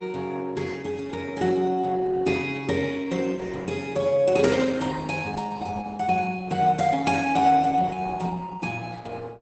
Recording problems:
lossy compression; Opus, log-spectral distance 4 dB, nothing above 8.2 kHz

